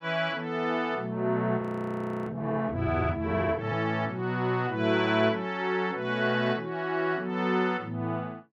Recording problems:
audio freezing; at 1.5 s for 0.5 s

